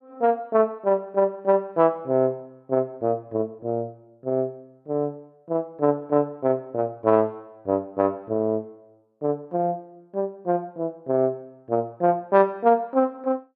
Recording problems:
none

